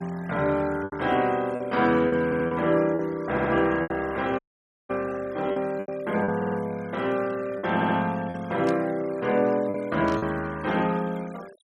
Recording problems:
noise reduction artefacts; signal-to-artefact ratio 22 dB
packet loss; 6% of the sound replaced, filled with repeated pitch periods
audio stuttering; 4 times, first at 2.5 s
audio cutting out; at 4.5 s for 0.5 s
burst of static; at 8.5 s and at 10 s; peak -12 dB vs average level

